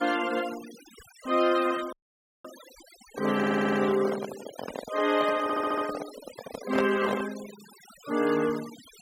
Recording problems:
denoising artefacts; signal-to-artefact ratio 15 dB
audio cutting out; at 2 s for 0.5 s
handling noise; from 3 to 7.5 s; peak +1 dB vs average level
audio stuttering; at 3.5 s and at 5.5 s

